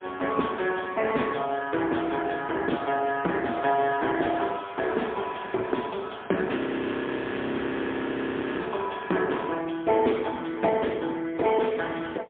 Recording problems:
phone line; 240 Hz to 3.5 kHz, AMR-NB, then MP3
crackle; from 4.5 to 8.5 s; loose cable, SNR 25 dB
audio freezing; at 6.5 s for 2 s

